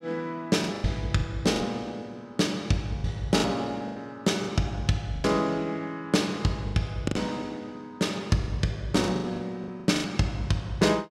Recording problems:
lost packets; 9% of the sound replaced, filled with the last packet

